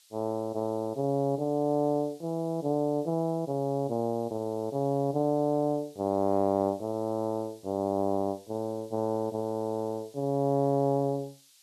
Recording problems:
background hiss; slope +6 dB per octave, SNR 27 dB

